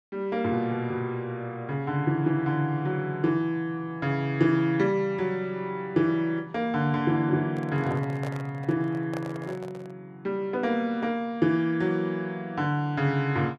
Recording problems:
microphone handling noise; from 7.5 to 10 s; peak -6 dB vs average level

